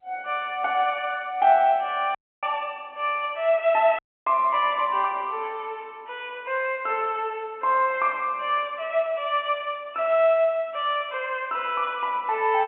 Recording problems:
telephone audio; 300 Hz to 3.3 kHz, G.711
audio cutting out; at 2 s and at 4 s

